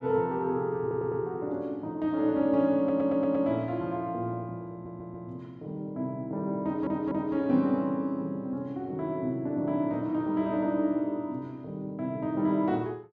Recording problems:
stutter; 4 times, first at 1 s

